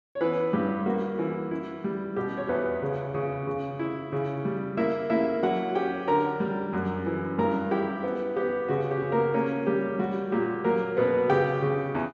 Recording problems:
none

